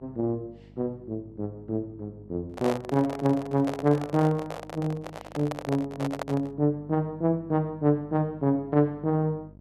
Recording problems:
mains hum; 50 Hz, harmonics up to 700 Hz, SNR 23 dB
handling noise; from 2.5 to 6.5 s; peak 0 dB vs average level

